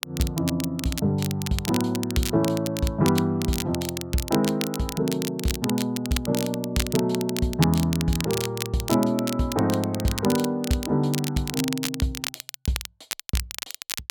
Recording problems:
crackling; vinyl, SNR 7 dB

